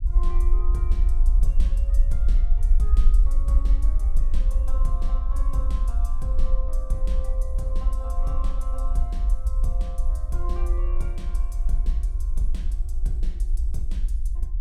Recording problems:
low-frequency rumble; below 48 Hz, SNR -14 dB

